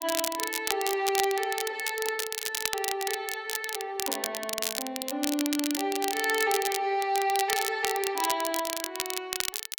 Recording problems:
crackle; vinyl, SNR 2 dB

